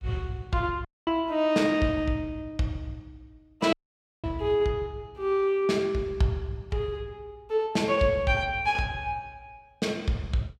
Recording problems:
audio cutting out; at 1 s and at 3.5 s for 0.5 s

